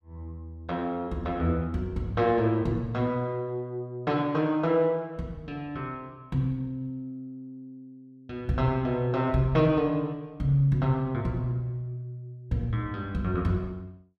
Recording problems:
none

